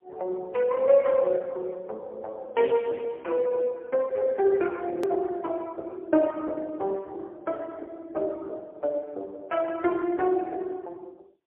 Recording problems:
phone line; 260 Hz to 2.8 kHz, AMR-NB, then MP3
hard cut with a click; at 5 s

